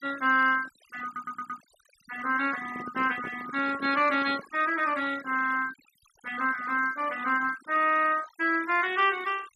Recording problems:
noise reduction artefacts; signal-to-artefact ratio 17 dB
audio stuttering; at 1 s
handling noise; from 2.5 to 4.5 s; peak -10 dB vs average level

